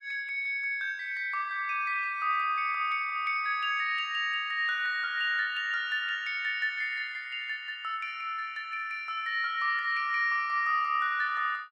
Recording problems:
lossy compression; Vorbis, log-spectral distance 2 dB, nothing above 10.4 kHz

